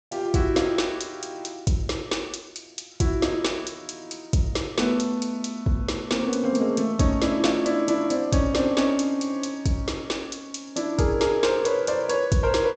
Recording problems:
treble cut off; nothing above 8 kHz

